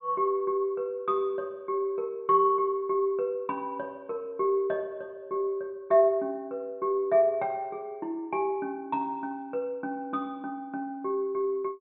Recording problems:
low-pass filter; nothing above 3.9 kHz

